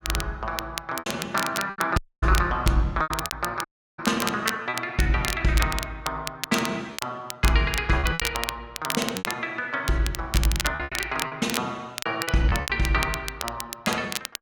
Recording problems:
crackling; vinyl, SNR 6 dB
packet loss; 8% of the sound replaced, filled with repeated pitch periods
dropout; at 2 s and at 3.5 s

